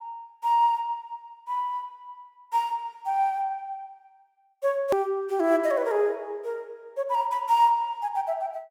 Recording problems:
click at an edit; at 5 s

